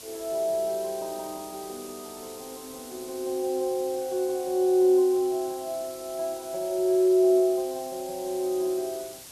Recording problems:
hiss; SNR 16 dB

